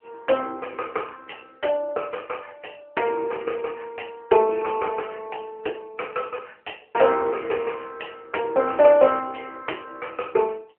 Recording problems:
phone line; 300 Hz to 3.1 kHz, AMR-NB

